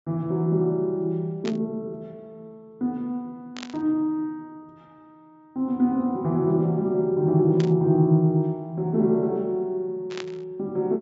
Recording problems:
low-pass filter; nothing above 8 kHz
burst of static; 4 times, first at 1.5 s; peak -7 dB vs average level

